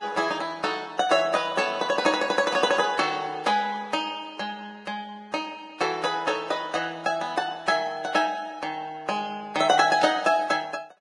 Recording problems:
lossy codec; Vorbis, log-spectral distance 3 dB, nothing above 10.4 kHz

